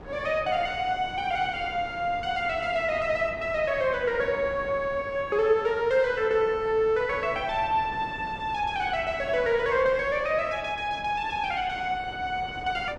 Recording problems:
wind noise; below 760 Hz, SNR 17 dB

